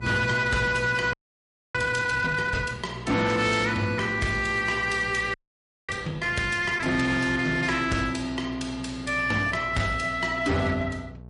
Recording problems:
lossy codec; MP3, log-spectral distance 3 dB, nothing above 10.4 kHz
distorted audio; hard clipping, signal-to-distortion ratio 12 dB
hum; 60 Hz, harmonics up to 840 Hz, SNR 18 dB
audio freezing; at 1 s for 0.5 s and at 5.5 s for 0.5 s

